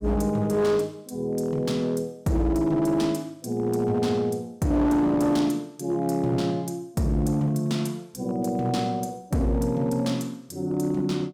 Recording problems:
distortion; hard clipping, signal-to-distortion ratio 12 dB

